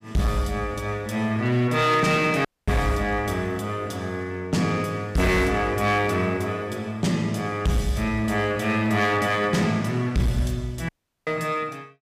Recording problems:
distortion; hard clipping, signal-to-distortion ratio 11 dB
audio cutting out; at 2.5 s and at 11 s

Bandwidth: 15 kHz